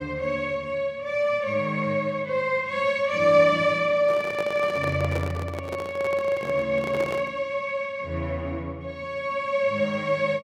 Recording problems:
microphone handling noise; from 4 to 7.5 s; peak -3 dB vs average level

